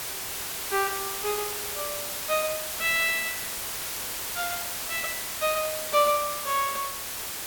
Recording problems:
background hiss; slope 0 dB per octave, SNR 2 dB

